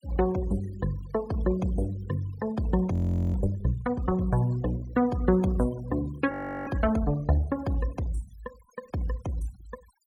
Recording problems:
denoising artefacts; signal-to-artefact ratio 22 dB
frozen audio; at 3 s and at 6.5 s

